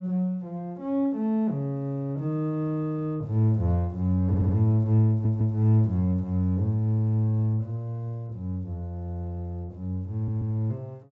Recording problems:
treble missing; nothing above 7.7 kHz
audio stuttering; at 4.5 s, at 5 s and at 10 s

